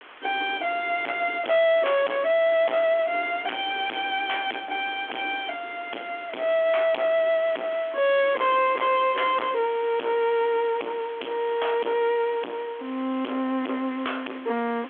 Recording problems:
telephone audio; 240 Hz to 3.4 kHz, G.726
distorted audio; soft clipping, signal-to-distortion ratio 4 dB
background hiss; SNR 17 dB

